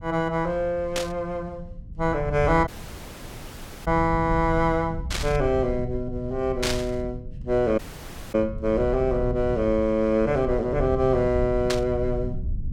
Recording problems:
rumble; below 110 Hz, SNR 10 dB
burst of static; 4 times, first at 1 s; peak +2 dB vs average level
dropout; at 2.5 s for 1 s and at 8 s for 0.5 s

